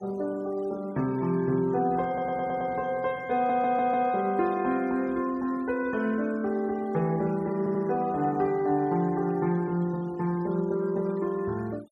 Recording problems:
noise reduction artefacts; signal-to-artefact ratio 24 dB
audio stuttering; at 2 s, at 3.5 s and at 7.5 s

